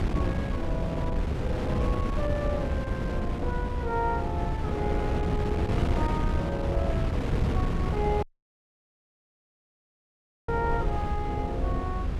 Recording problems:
electrical hum; 60 Hz, harmonics up to 1.2 kHz, SNR 23 dB
rumble; below 74 Hz, SNR 4 dB
wind on the microphone; below 260 Hz, SNR -3 dB
audio cutting out; at 8 s for 2.5 s

